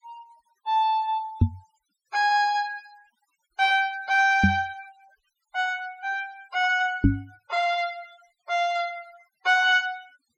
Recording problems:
noise reduction artefacts; signal-to-artefact ratio 25 dB
knock on the microphone; at 1.5 s, at 4.5 s and at 7 s; peak +9 dB vs average level

